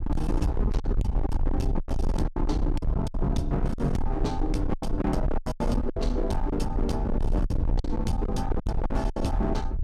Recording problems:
distortion; hard clipping, signal-to-distortion ratio 6 dB
low-frequency rumble; below 66 Hz, SNR 1 dB
lost packets; 10% of the sound replaced, filled with silence

